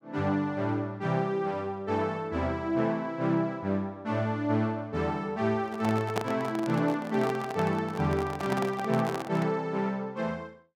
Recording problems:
handling noise; from 5.5 to 9.5 s; peak +3 dB vs average level

